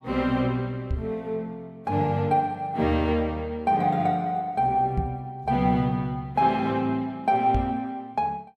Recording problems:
microphone bump; at 1 s, at 5 s and at 7.5 s; peak +2 dB vs average level

